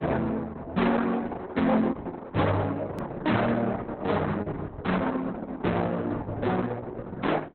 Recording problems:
lossy compression; Opus, log-spectral distance 4 dB, nothing above 17.1 kHz
distortion; hard clipping, uneven, signal-to-distortion ratio 10 dB
edit click; at 3 s

